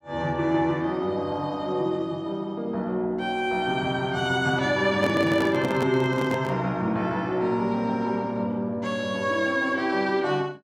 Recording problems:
handling noise; from 5 to 6.5 s; peak +1 dB vs average level

